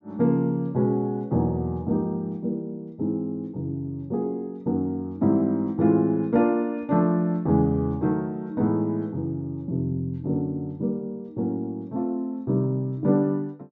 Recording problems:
low-pass filter; nothing above 8 kHz

